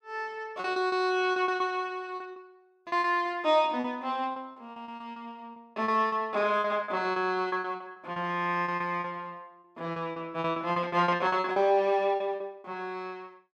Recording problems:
packet loss; 15% of the sound replaced, filled with repeated pitch periods

